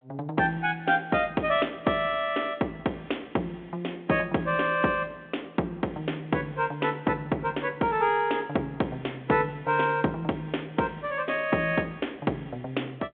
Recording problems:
telephone audio; 190 Hz to 3.6 kHz, G.726

